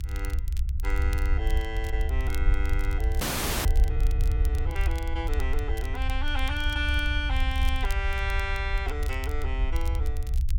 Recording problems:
low-frequency rumble; below 68 Hz, SNR -4 dB
crackling; vinyl, SNR 15 dB
frozen audio; at 3 s

